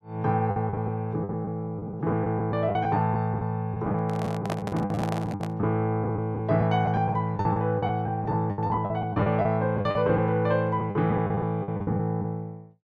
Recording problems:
packet loss; 14% of the sound replaced, filled with the last packet
microphone handling noise; from 4 to 5.5 s; peak -2 dB vs average level

